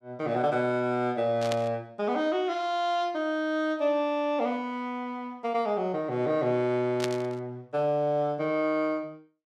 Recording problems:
static burst; at 1.5 s and at 7 s; peak 0 dB vs average level

